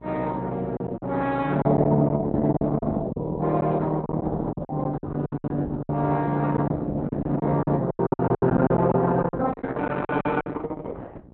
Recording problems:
codec artefacts; Opus, log-spectral distance 3 dB, nothing above 4 kHz
electrical hum; 60 Hz, harmonics up to 780 Hz, SNR 21 dB
packet loss; 12% of the sound replaced, filled with silence

